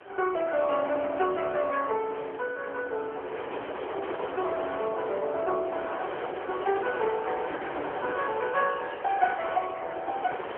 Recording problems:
telephone audio; 320 Hz to 3.4 kHz, AMR-NB
wind on the microphone; below 1.2 kHz, SNR 8 dB

